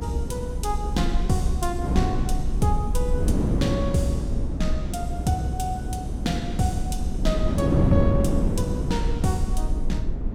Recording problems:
rumble; below 62 Hz, SNR 3 dB
wind noise; below 280 Hz, SNR -1 dB

